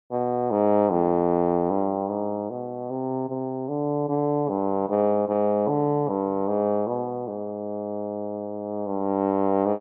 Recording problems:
none

